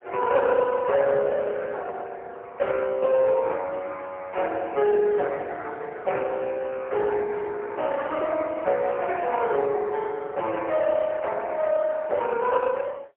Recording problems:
telephone audio; 340 Hz to 3.5 kHz, AMR-NB, then MP3

